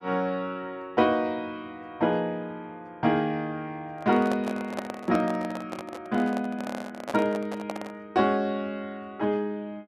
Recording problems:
handling noise; from 4 to 8 s; peak 0 dB vs average level

